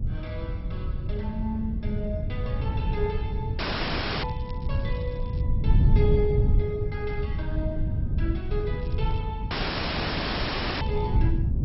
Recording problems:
lossy compression; MP2, log-spectral distance 4 dB, nothing above 5.5 kHz
wind noise; below 110 Hz, SNR -6 dB
audio cutting out; at 3.5 s for 0.5 s and at 9.5 s for 1.5 s
crackling; from 4 to 5.5 s, at 9 s and at 11 s; loose cable, SNR 22 dB

